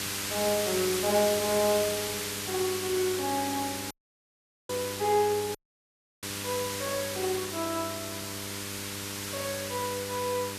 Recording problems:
mains hum; 50 Hz, harmonics up to 2.1 kHz, SNR 12 dB
background hiss; slope +1 dB per octave, SNR 3 dB
audio cutting out; at 4 s for 1 s and at 5.5 s for 0.5 s

